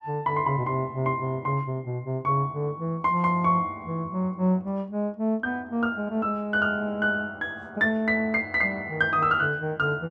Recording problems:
none

